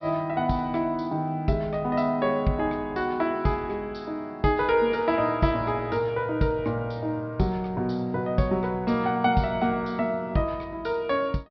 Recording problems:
treble cut off; nothing above 5.5 kHz

